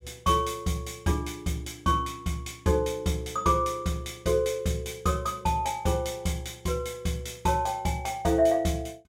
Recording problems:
none

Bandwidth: 16 kHz